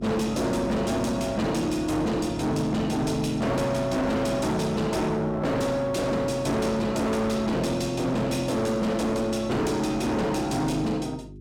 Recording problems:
distorted audio; hard clipping, uneven, signal-to-distortion ratio 7 dB
hum; 50 Hz, harmonics up to 400 Hz, SNR 17 dB

